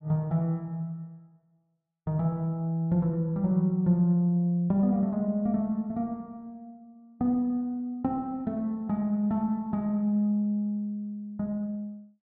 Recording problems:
none

